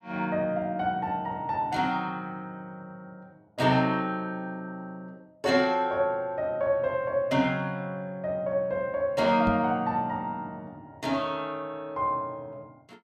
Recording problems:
microphone thump; at 9.5 s; peak +1 dB vs average level

